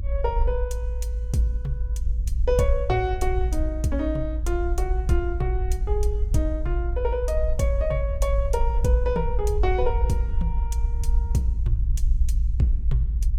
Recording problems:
rumble; below 58 Hz, SNR -1 dB

